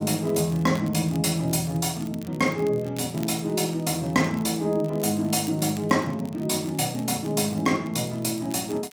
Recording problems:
crackling; vinyl, SNR 23 dB

